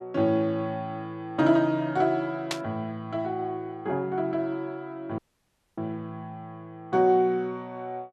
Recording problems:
burst of static; at 2.5 s; peak +2 dB vs average level
audio cutting out; at 5 s for 0.5 s

